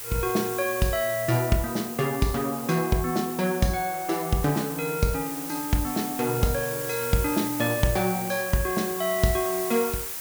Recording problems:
hiss; slope 0 dB per octave, SNR 7 dB

